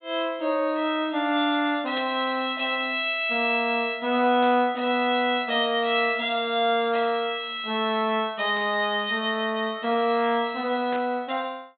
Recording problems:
treble missing; nothing above 4 kHz
burst of static; 4 times, first at 2 s; peak -10 dB vs average level

